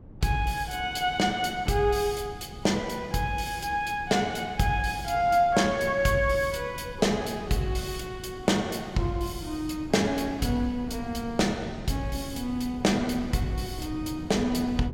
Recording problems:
wind on the microphone; below 220 Hz, SNR 15 dB

